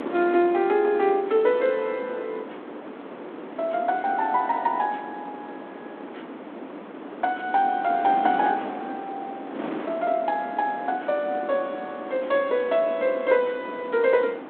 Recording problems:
phone line; 240 Hz to 3.7 kHz, G.726
wind noise; below 820 Hz, SNR 12 dB

